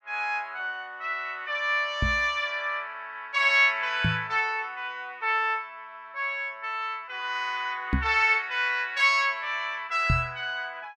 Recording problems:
microphone thump; 4 times, first at 2 s; peak +4 dB vs average level

